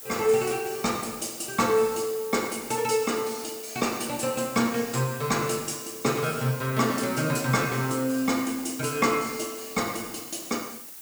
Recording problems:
hiss; SNR 12 dB

